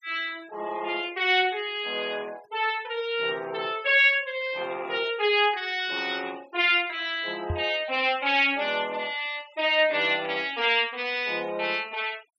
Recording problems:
denoising artefacts; signal-to-artefact ratio 24 dB
knock on the microphone; at 7.5 s; peak -2 dB vs average level

